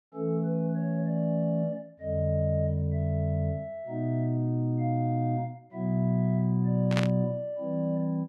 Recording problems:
static burst; at 7 s; peak +1 dB vs average level

